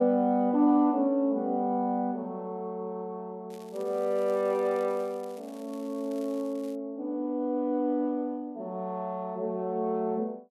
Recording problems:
crackle; from 3.5 to 7 s; loose cable, SNR 26 dB

